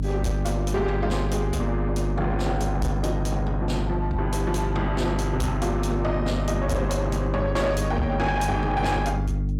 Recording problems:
distorted audio; soft clipping, signal-to-distortion ratio 11 dB
hum; 50 Hz, harmonics up to 550 Hz, SNR 1 dB

